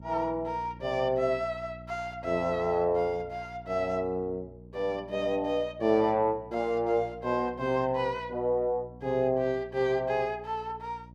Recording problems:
hum; 60 Hz, harmonics up to 660 Hz, SNR 19 dB

